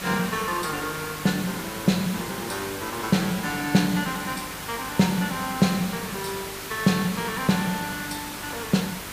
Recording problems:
mains hum; 50 Hz, harmonics up to 1.5 kHz, SNR 20 dB
background hiss; slope -2 dB per octave, SNR 8 dB

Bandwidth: 15 kHz